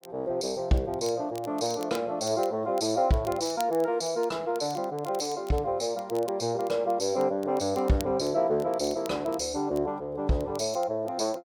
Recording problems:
crackling; vinyl, SNR 21 dB

